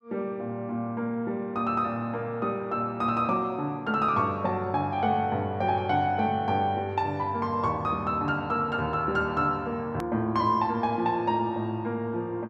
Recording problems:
click at an edit; at 10 s

